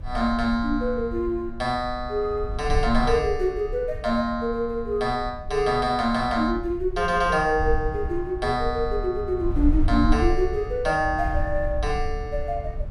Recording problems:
wind noise; below 66 Hz, SNR 8 dB

